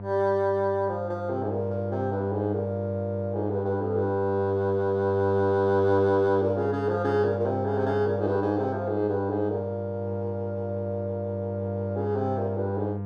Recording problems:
hum; 50 Hz, harmonics up to 1 kHz, SNR 7 dB

